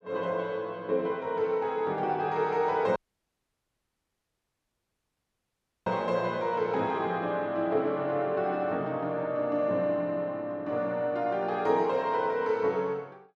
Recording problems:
audio cutting out; at 3 s for 3 s

